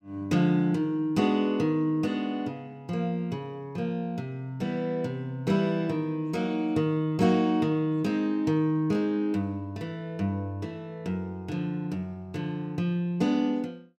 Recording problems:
none

